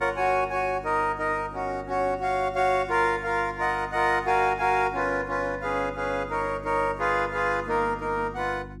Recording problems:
mains hum; 50 Hz, harmonics up to 350 Hz, SNR 17 dB

